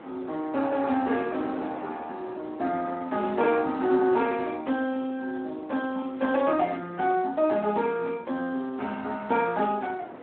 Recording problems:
telephone audio; 170 Hz to 3.4 kHz, Speex
wind on the microphone; below 940 Hz, SNR 17 dB

